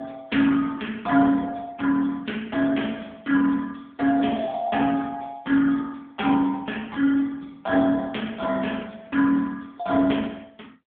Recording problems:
telephone audio; 220 Hz to 3.4 kHz, AMR-NB

